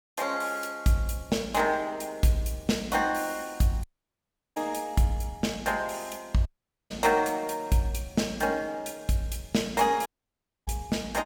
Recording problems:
audio cutting out; at 4 s for 0.5 s, at 6.5 s and at 10 s for 0.5 s

